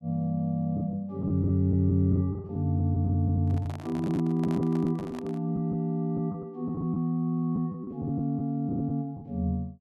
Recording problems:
lost packets; 7% of the sound replaced, filled with the last packet
handling noise; from 3.5 to 5.5 s; peak -9 dB vs average level

